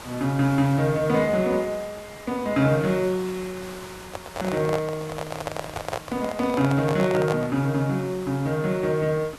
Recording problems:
background hiss; SNR 17 dB
microphone handling noise; from 4 to 7.5 s; peak -1 dB vs average level

